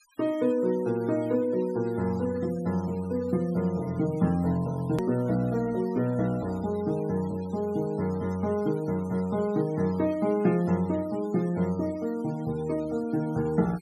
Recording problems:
noise reduction artefacts; signal-to-artefact ratio 22 dB
edit click; at 5 s

